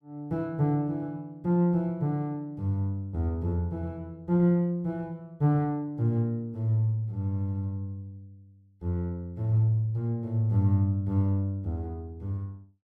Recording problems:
none

